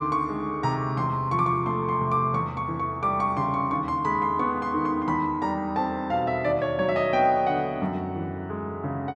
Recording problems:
none

